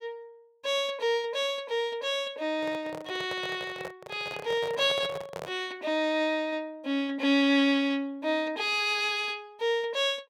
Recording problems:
microphone handling noise; from 2.5 to 5.5 s; peak -6 dB vs average level

